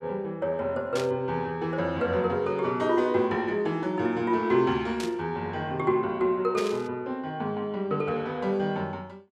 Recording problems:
burst of static; at 1 s, at 5 s and at 6.5 s; peak -4 dB vs average level

